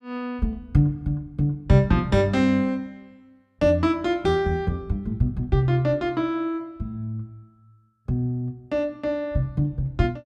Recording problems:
none

